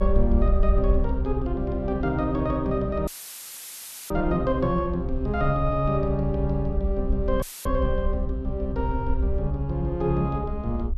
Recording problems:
rumble; below 66 Hz, SNR 3 dB
dropout; at 3 s for 1 s and at 7.5 s; filled with static

